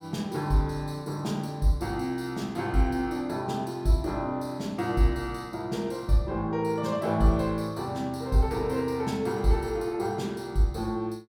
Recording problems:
none

